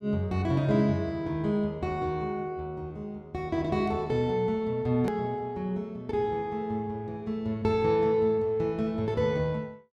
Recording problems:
click at an edit; at 5 s

